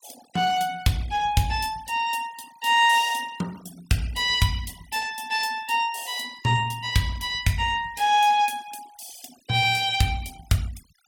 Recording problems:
noise reduction artefacts; signal-to-artefact ratio 22 dB

